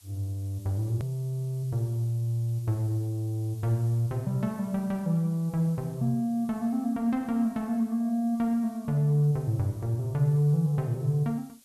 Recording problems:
background hiss; SNR 27 dB
click at an edit; at 1 s

